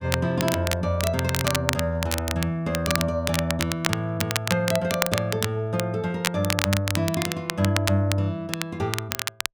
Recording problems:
crackle; vinyl, SNR 3 dB

